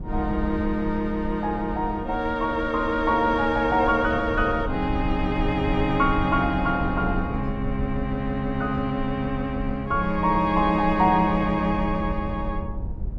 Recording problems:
low-frequency rumble; below 94 Hz, SNR 10 dB

